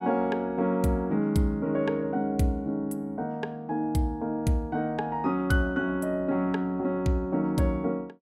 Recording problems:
none

